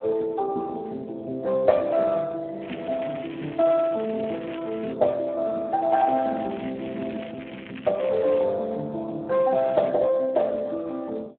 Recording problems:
phone line; 240 Hz to 2.6 kHz, Speex
crackle; from 2.5 to 5 s, from 6 to 8.5 s and at 9.5 s; loose cable, SNR 17 dB

